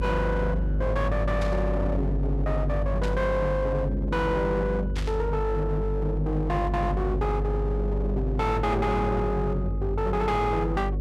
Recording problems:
distorted audio; hard clipping, uneven, signal-to-distortion ratio 11 dB
hum; 50 Hz, harmonics up to 550 Hz, SNR 2 dB
static burst; at 1.5 s, at 3 s and at 5 s; peak -6 dB vs average level

